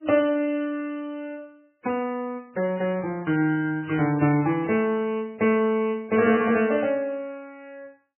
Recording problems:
lossy compression; MP3, log-spectral distance 2 dB, nothing above 2.4 kHz

